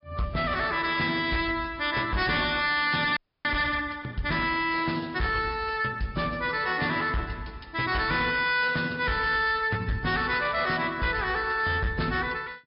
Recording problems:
low-pass filter; nothing above 5.2 kHz
codec artefacts; AAC, log-spectral distance 3 dB
distorted audio; hard clipping, signal-to-distortion ratio 11 dB
frozen audio; at 3 s

